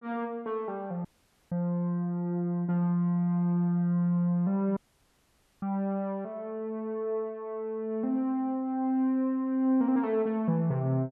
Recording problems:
audio cutting out; at 1 s and at 5 s for 1 s

